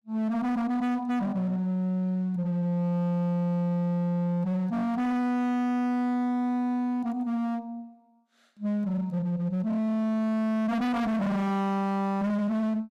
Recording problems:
distorted audio; hard clipping, uneven, signal-to-distortion ratio 6 dB

